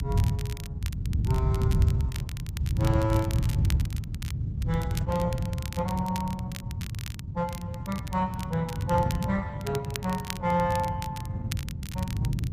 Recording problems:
lossy compression; Opus, log-spectral distance 2 dB
rumble; below 140 Hz, SNR -2 dB
crackle; vinyl, SNR 12 dB

